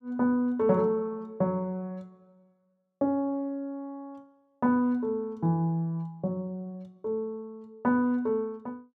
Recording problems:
none

